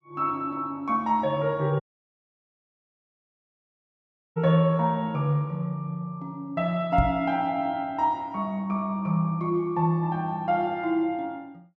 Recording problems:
dropout; at 2 s for 2.5 s
microphone bump; at 7 s; peak +4 dB vs average level

